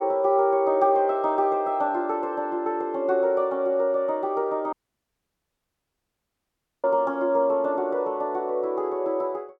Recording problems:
audio cutting out; at 4.5 s for 2 s

